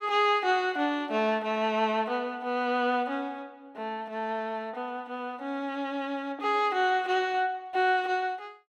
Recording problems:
none

